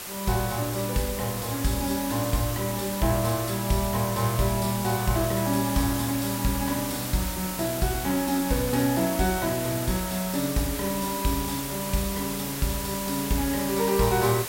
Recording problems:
hiss; slope -1 dB per octave, SNR 6 dB

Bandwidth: 16 kHz